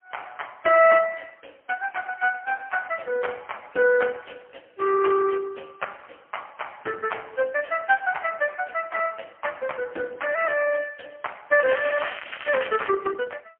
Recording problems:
phone line; 280 Hz to 3 kHz, AMR-NB, then MP3
crackling; from 12 to 13 s; loose cable, SNR 13 dB

